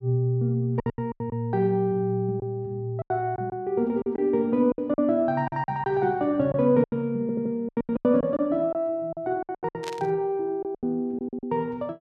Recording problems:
packet loss; 13% of the sound replaced, filled with silence
audio stuttering; at 7 s
static burst; at 10 s; peak -7 dB vs average level

